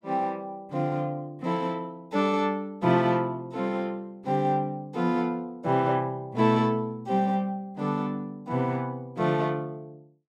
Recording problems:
none

